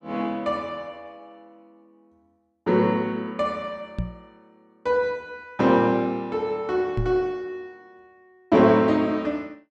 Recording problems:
knock on the microphone; at 4 s and at 7 s; peak 0 dB vs average level

